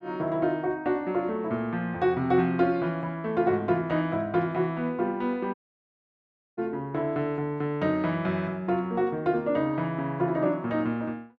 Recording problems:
audio cutting out; at 5.5 s for 1 s

